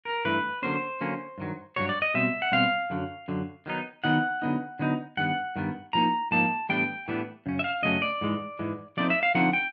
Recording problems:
none

